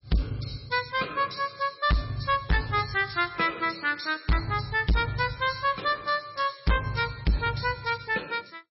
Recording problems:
lossy compression; MP3, log-spectral distance 6 dB, nothing above 5.5 kHz
distorted audio; soft clipping, signal-to-distortion ratio 6 dB

